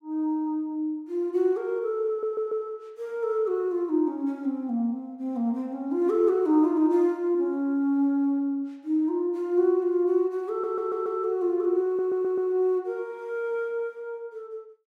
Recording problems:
stutter; at 2 s, at 11 s and at 12 s

